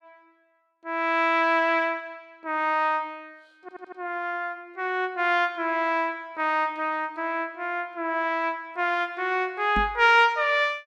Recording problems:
stutter; at 3.5 s
knock on the microphone; at 10 s; peak -3 dB vs average level

